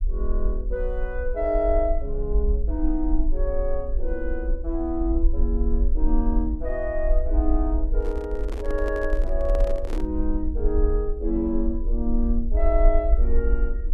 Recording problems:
low-frequency rumble; below 48 Hz, SNR -1 dB
handling noise; from 8 to 10 s; peak -3 dB vs average level

